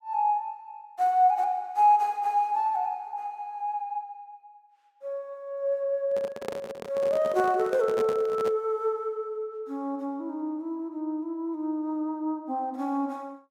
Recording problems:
handling noise; from 6 to 8.5 s; peak -2 dB vs average level

